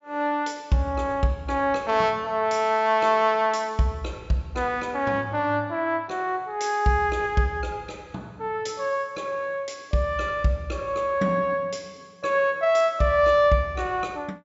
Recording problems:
treble cut off; nothing above 7.5 kHz

